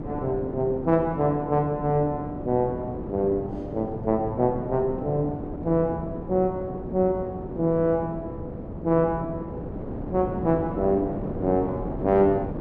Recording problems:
wind on the microphone; below 420 Hz, SNR 9 dB

